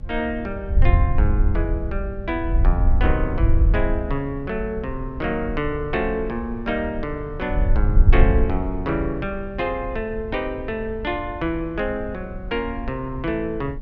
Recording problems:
electrical hum; 60 Hz, harmonics up to 1.4 kHz, SNR 20 dB
wind noise; below 72 Hz, SNR -1 dB

